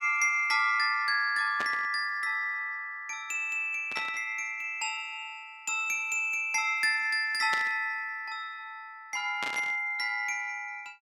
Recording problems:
static burst; 4 times, first at 1.5 s; peak -3 dB vs average level

